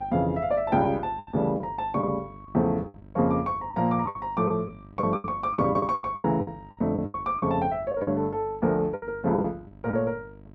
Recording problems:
hum; 50 Hz, harmonics up to 1 kHz, SNR 21 dB
lost packets; 11% of the sound replaced, filled with the last packet

